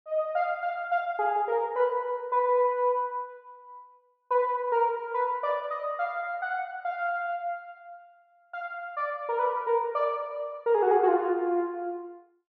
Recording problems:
none

